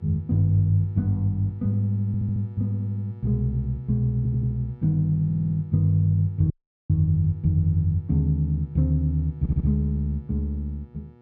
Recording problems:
hum; 60 Hz, harmonics up to 1.8 kHz, SNR 26 dB
audio stuttering; 4 times, first at 2 s
dropout; at 6.5 s

